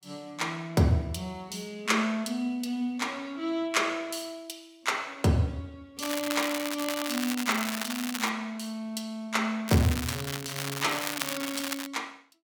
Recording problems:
crackling; from 6 to 8.5 s and from 9.5 to 12 s; loose cable, SNR 4 dB

